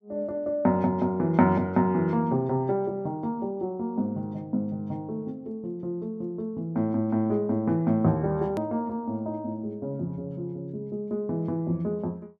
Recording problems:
hard cut with a click; at 8.5 s

